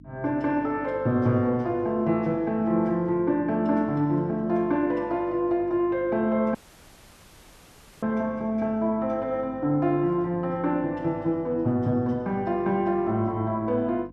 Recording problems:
hum; 50 Hz, harmonics up to 300 Hz, SNR 22 dB
dropout; at 6.5 s for 1.5 s

